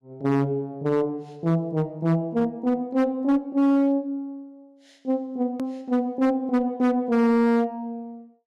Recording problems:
distortion; hard clipping, signal-to-distortion ratio 11 dB
hard cut with a click; at 5.5 s

